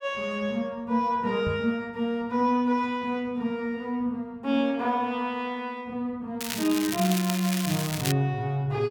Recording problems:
microphone thump; at 1.5 s; peak -1 dB vs average level
crackling; from 6.5 to 8 s; loose cable, SNR 5 dB

